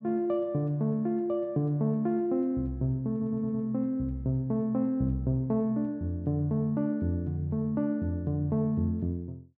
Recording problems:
stutter; at 3 s

